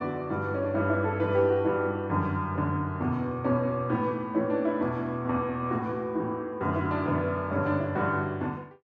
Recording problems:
none

